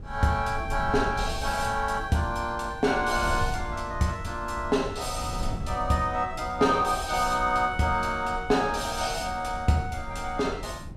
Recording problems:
wind noise; below 110 Hz, SNR 11 dB

